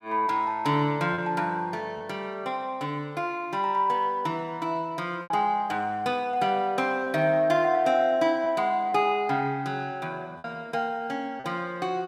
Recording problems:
lost packets; 2% of the sound replaced, filled with repeated pitch periods

